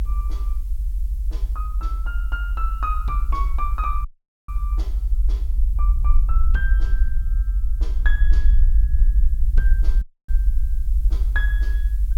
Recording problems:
background hiss; slope +1 dB per octave, SNR 24 dB
low-frequency rumble; below 50 Hz, SNR -10 dB
dropout; at 4 s and at 10 s

